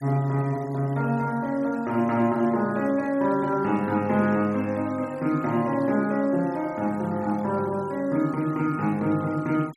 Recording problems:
denoising artefacts; signal-to-artefact ratio 25 dB

